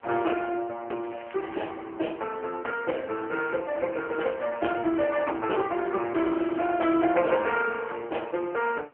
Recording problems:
telephone audio; 260 Hz to 3 kHz, AMR-NB
wind on the microphone; below 1.5 kHz, SNR 26 dB
crackle; at 1 s and at 6 s; loose cable, SNR 21 dB

